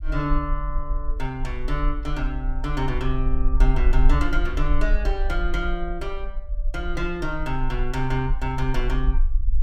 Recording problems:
low-frequency rumble; below 44 Hz, SNR -1 dB

